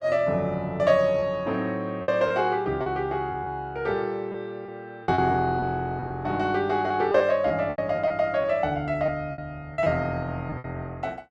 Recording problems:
lost packets; 7% of the sound replaced, filled with repeated pitch periods

